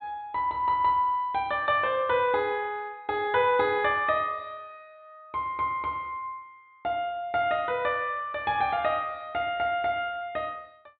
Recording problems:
treble missing; nothing above 4.1 kHz

